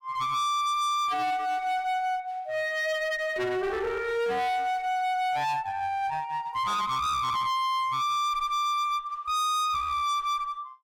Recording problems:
distortion; hard clipping, uneven, signal-to-distortion ratio 5 dB

